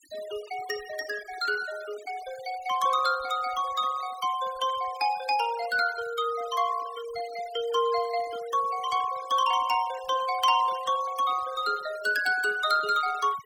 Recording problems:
noise reduction artefacts; signal-to-artefact ratio 18 dB

